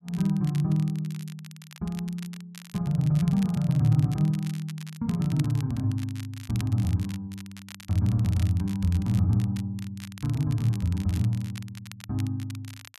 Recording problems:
crackling; vinyl, SNR 20 dB

